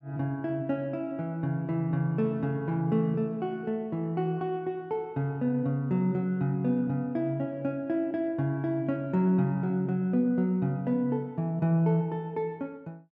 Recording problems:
none

